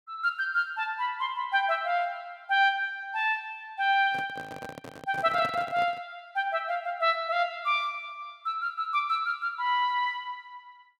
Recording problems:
handling noise; from 4 to 6 s; peak -7 dB vs average level

